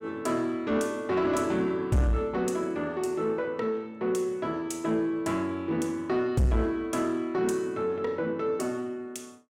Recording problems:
distorted audio; soft clipping, signal-to-distortion ratio 10 dB

